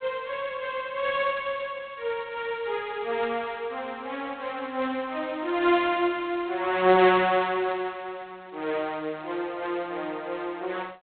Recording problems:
telephone audio; 280 Hz to 3.8 kHz, G.726

